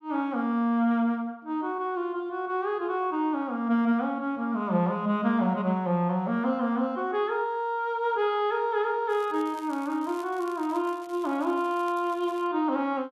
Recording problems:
crackle; from 9 to 12 s; loose cable, SNR 25 dB

